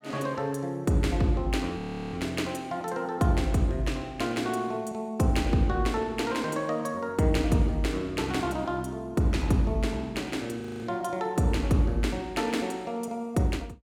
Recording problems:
audio freezing; at 2 s and at 11 s

